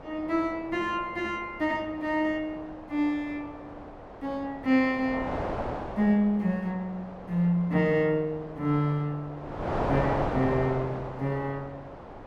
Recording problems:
wind noise; below 900 Hz, SNR 8 dB

